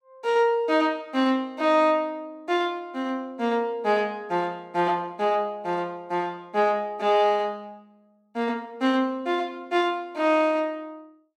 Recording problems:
none

